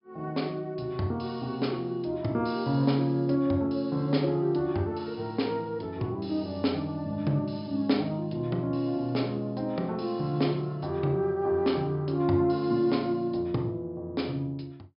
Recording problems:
treble cut off; nothing above 5.5 kHz

